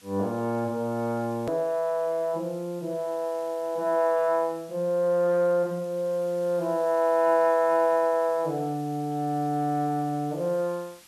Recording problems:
background hiss; slope +1 dB per octave, SNR 25 dB
edit click; at 1.5 s

